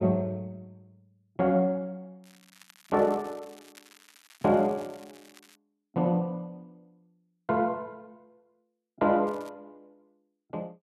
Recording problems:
crackling; from 2 to 5.5 s and at 9.5 s; loose cable, SNR 26 dB

